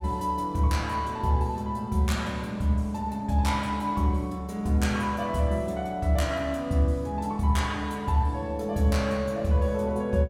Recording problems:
none

